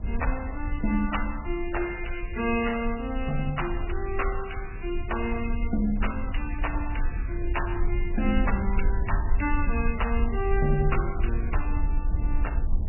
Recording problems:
lossy codec; MP3, log-spectral distance 3 dB, nothing above 2.9 kHz
low-frequency rumble; below 58 Hz, SNR 1 dB

